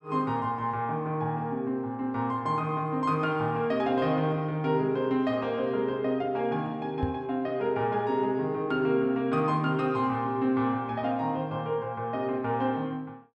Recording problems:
microphone thump; at 7 s; peak +1 dB vs average level

